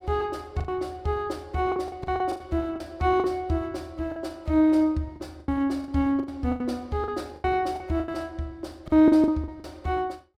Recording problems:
lost packets; 12% of the sound replaced, filled with the last packet

